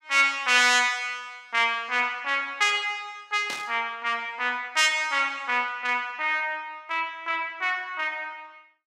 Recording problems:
burst of static; at 3.5 s; peak -6 dB vs average level

